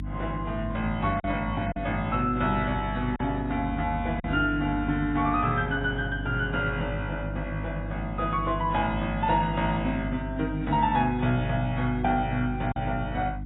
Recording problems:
lossy codec; AAC, log-spectral distance 2 dB, nothing above 3.4 kHz
electrical hum; 50 Hz, harmonics up to 300 Hz, SNR 7 dB
lost packets; 1.5% of the sound replaced, filled with silence

